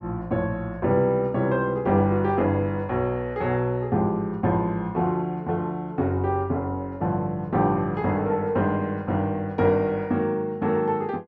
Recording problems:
none

